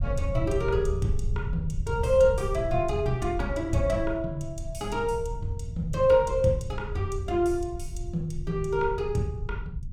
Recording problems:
low-frequency rumble; below 100 Hz, SNR 7 dB

